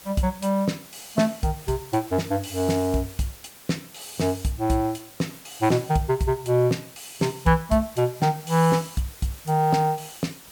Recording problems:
background hiss; slope -1 dB per octave, SNR 19 dB

